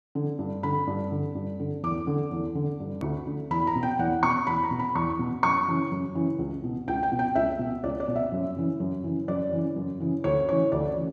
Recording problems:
hard cut with a click; at 3 s

